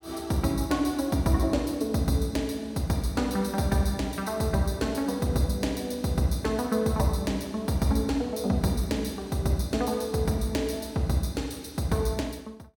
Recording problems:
none

